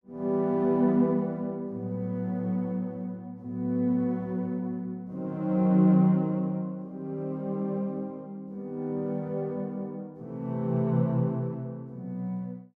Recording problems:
none

